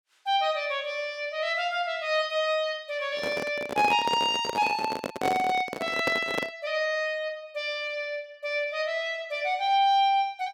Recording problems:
handling noise; from 3 to 6.5 s; peak +1 dB vs average level

